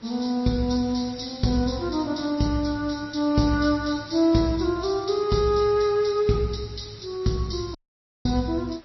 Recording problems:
lossy compression; MP3, then MP3, log-spectral distance 6 dB, nothing above 5.8 kHz
hiss; SNR 25 dB
audio cutting out; at 8 s for 0.5 s

